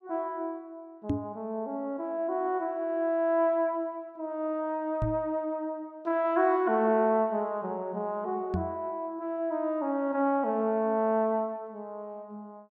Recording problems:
microphone thump; at 1 s, at 5 s and at 8.5 s; peak +4 dB vs average level

